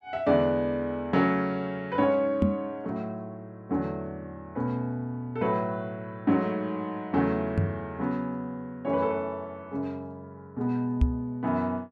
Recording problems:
knock on the microphone; at 2.5 s, at 7.5 s and at 11 s; peak +9 dB vs average level

